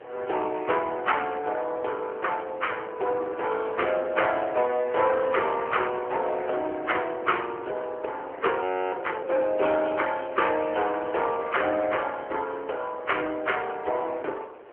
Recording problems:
telephone audio; 340 Hz to 3.2 kHz, AMR-NB
wind noise; below 980 Hz, SNR 16 dB
audio freezing; at 8.5 s

